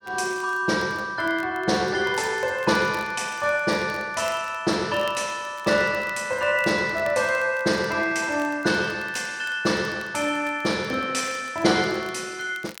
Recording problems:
crackling; vinyl, SNR 24 dB

